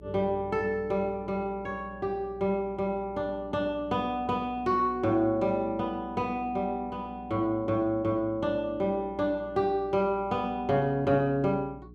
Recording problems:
hum; 60 Hz, harmonics up to 420 Hz, SNR 20 dB

